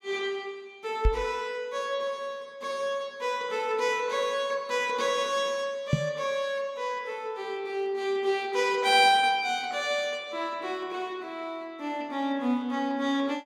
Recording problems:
knock on the microphone; at 1 s and at 6 s; peak +8 dB vs average level

